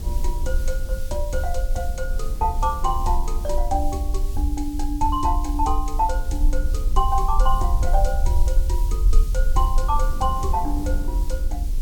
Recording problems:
background hiss; slope +5 dB per octave, SNR 17 dB
rumble; below 46 Hz, strongest tone 24 Hz, SNR -1 dB
wind noise; below 220 Hz, SNR 14 dB

